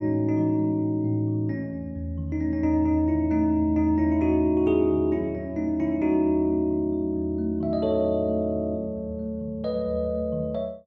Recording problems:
none

